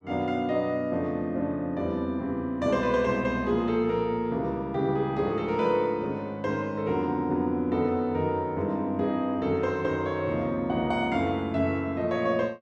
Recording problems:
none

